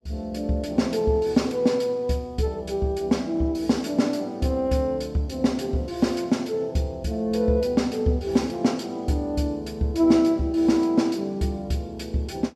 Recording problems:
none

